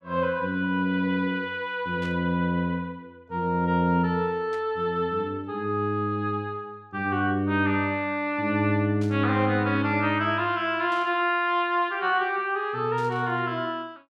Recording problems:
static burst; 5 times, first at 2 s; peak -15 dB vs average level

